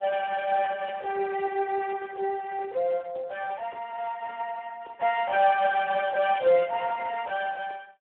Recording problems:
phone line; 320 Hz to 2.8 kHz, Speex

